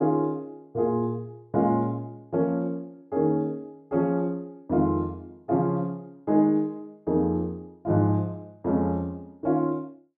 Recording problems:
none

